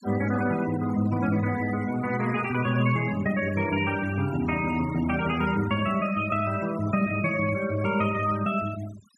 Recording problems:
noise reduction artefacts; signal-to-artefact ratio 15 dB

